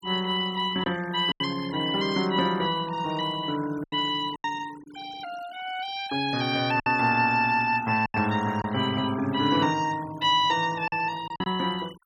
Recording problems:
noise reduction artefacts; signal-to-artefact ratio 18 dB
packet loss; 5% of the sound replaced, filled with silence

